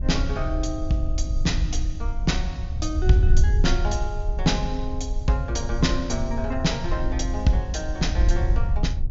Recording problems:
treble cut off; nothing above 7.2 kHz
wind on the microphone; below 72 Hz, SNR 0 dB

